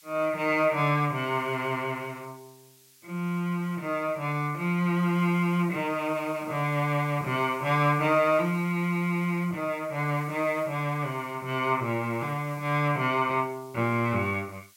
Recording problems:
background hiss; slope +5 dB per octave, SNR 25 dB

